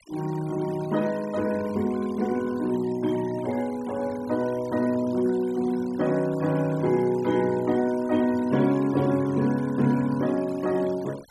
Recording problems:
noise reduction artefacts; signal-to-artefact ratio 21 dB

